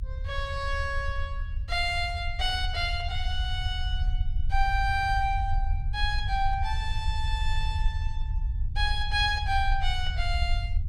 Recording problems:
rumble; below 74 Hz, SNR 2 dB

